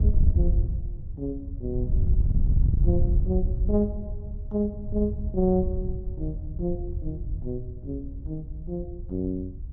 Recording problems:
wind on the microphone; below 84 Hz, SNR -2 dB

